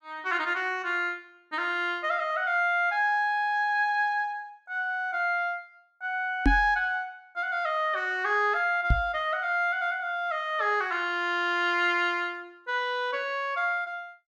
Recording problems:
microphone thump; at 6.5 s and at 9 s; peak +7 dB vs average level

